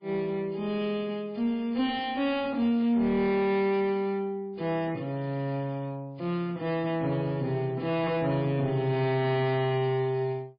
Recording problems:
lossy compression; MP3, log-spectral distance 2 dB, nothing above 4.8 kHz
distortion; soft clipping, signal-to-distortion ratio 10 dB

